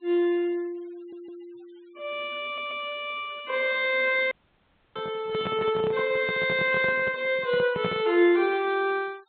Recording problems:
treble cut off; nothing above 4 kHz
noise reduction artefacts; signal-to-artefact ratio 27 dB
audio stuttering; at 1 s and at 2.5 s
audio cutting out; at 4.5 s for 0.5 s
microphone handling noise; from 5 to 8 s; peak -1 dB vs average level

